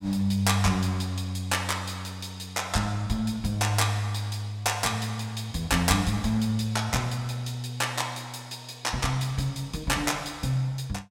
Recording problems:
none

